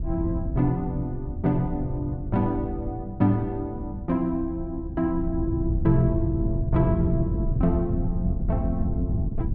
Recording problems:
wind noise; below 120 Hz, SNR 3 dB

